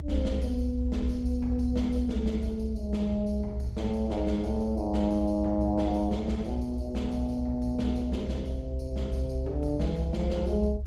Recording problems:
codec artefacts; Opus, log-spectral distance 2 dB, nothing above 15.5 kHz
low-frequency rumble; below 68 Hz, strongest tone 66 Hz, SNR 1 dB

